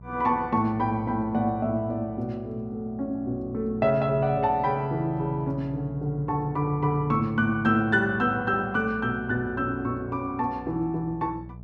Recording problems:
hum; 60 Hz, harmonics up to 660 Hz, SNR 17 dB

